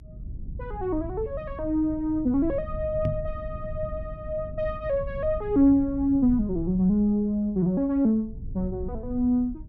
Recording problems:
rumble; below 110 Hz, SNR 13 dB
knock on the microphone; at 3 s; peak +1 dB vs average level

